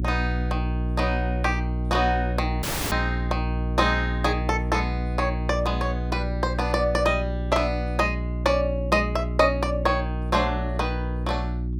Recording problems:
hum; 60 Hz, harmonics up to 360 Hz, SNR 2 dB
dropout; at 2.5 s

